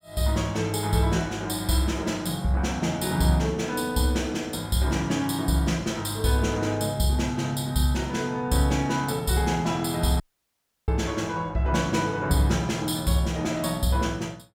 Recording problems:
audio cutting out; at 10 s for 0.5 s

